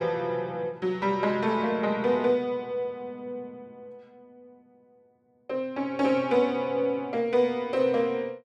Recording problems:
none

